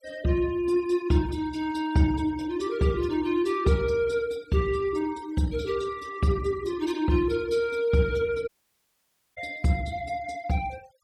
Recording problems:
denoising artefacts; signal-to-artefact ratio 22 dB
audio cutting out; at 8.5 s for 1 s

